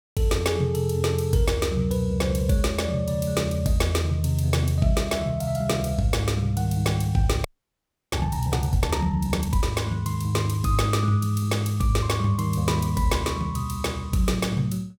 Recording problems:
frozen audio; at 7.5 s for 0.5 s

